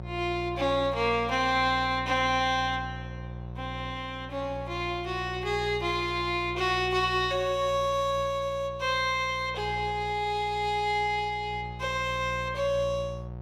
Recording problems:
hum; 60 Hz, harmonics up to 900 Hz, SNR 12 dB

